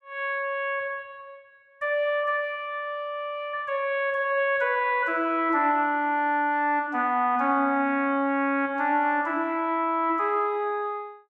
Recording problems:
none

